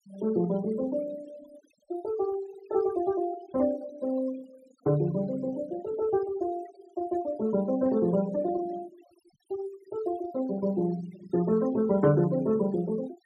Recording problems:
noise reduction artefacts; signal-to-artefact ratio 20 dB

